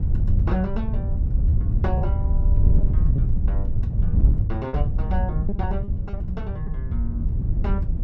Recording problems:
wind on the microphone; below 86 Hz, SNR -7 dB
lost packets; 4% of the sound replaced, filled with repeated pitch periods

